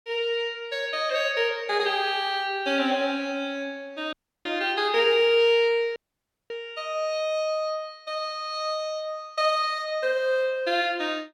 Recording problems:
audio cutting out; at 4 s and at 6 s for 0.5 s

